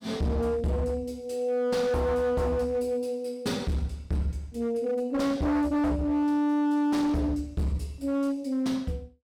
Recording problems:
distortion; hard clipping, signal-to-distortion ratio 8 dB

